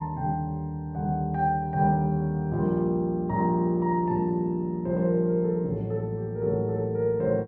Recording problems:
none

